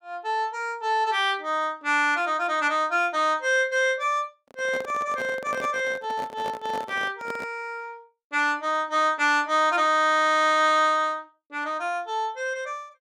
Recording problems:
microphone handling noise; from 4.5 to 7.5 s; peak -7 dB vs average level

